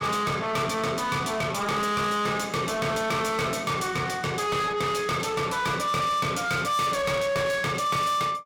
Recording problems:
distorted audio; soft clipping, signal-to-distortion ratio 6 dB

